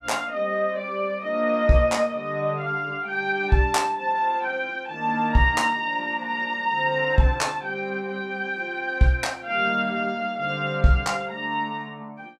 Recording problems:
none

